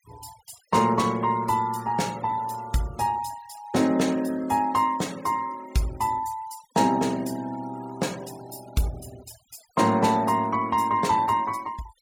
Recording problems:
denoising artefacts; signal-to-artefact ratio 21 dB

